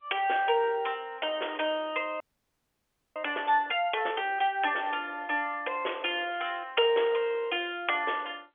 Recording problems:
telephone audio; 320 Hz to 3.4 kHz, G.711
audio freezing; at 2 s for 1 s

